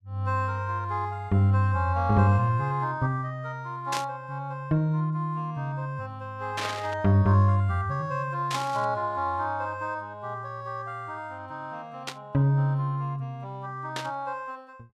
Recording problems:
burst of static; 5 times, first at 4 s; peak -1 dB vs average level

